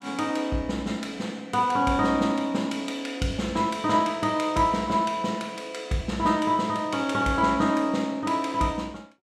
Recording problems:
none

